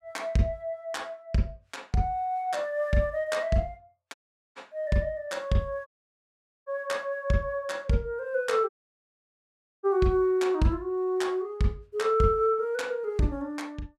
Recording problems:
dropout; at 4 s, at 6 s for 1 s and at 8.5 s for 1 s

